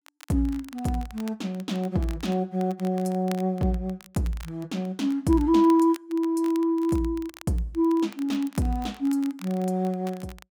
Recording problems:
crackle; vinyl, SNR 23 dB

